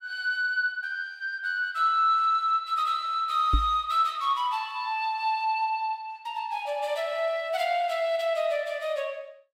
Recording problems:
knock on the microphone; at 3.5 s; peak +5 dB vs average level

